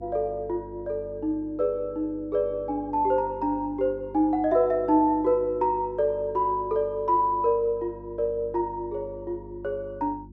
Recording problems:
electrical hum; 50 Hz, harmonics up to 350 Hz, SNR 20 dB

